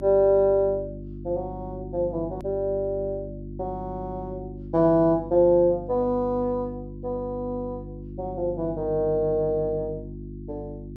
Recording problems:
mains hum; 50 Hz, harmonics up to 350 Hz, SNR 13 dB
hard cut with a click; at 2.5 s

